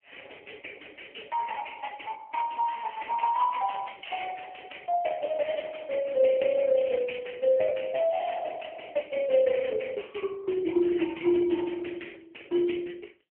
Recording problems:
phone line; 260 Hz to 3 kHz, AMR-NB

